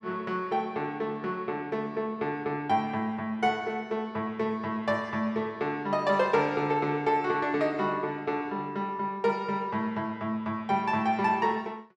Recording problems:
none

